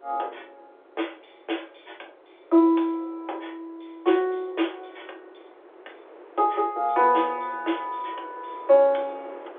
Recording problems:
phone line; 280 Hz to 3.6 kHz, G.711
wind on the microphone; below 880 Hz, SNR 24 dB

